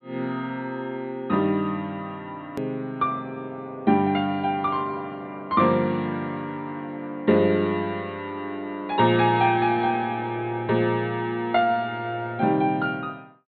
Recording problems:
treble missing; nothing above 4.3 kHz
hard cut with a click; at 2.5 s

